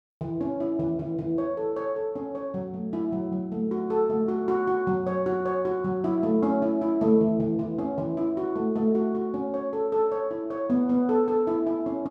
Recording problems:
none

